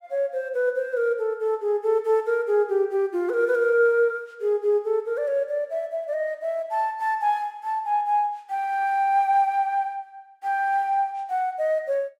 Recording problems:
none

